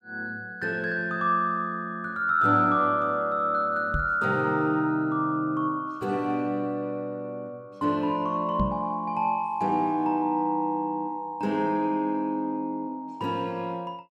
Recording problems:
microphone bump; at 4 s and at 8.5 s; peak +2 dB vs average level

